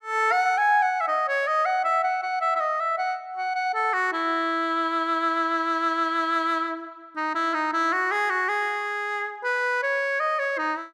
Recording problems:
none

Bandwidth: 14.5 kHz